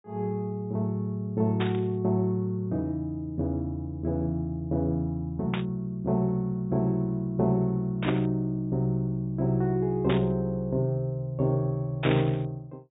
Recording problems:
treble missing; nothing above 3.8 kHz
static burst; 5 times, first at 1.5 s; peak +1 dB vs average level

